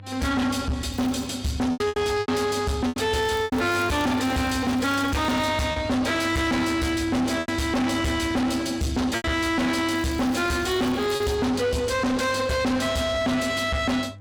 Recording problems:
distorted audio; soft clipping, signal-to-distortion ratio 6 dB
electrical hum; 50 Hz, harmonics up to 500 Hz, SNR 19 dB
lost packets; 5% of the sound replaced, filled with repeated pitch periods
crackle; at 1 s, from 3 to 5.5 s and from 10 to 11 s; loose cable, SNR 23 dB

